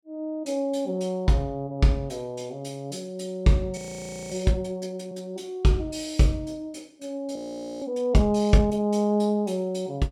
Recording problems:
audio freezing; at 4 s for 0.5 s and at 7.5 s

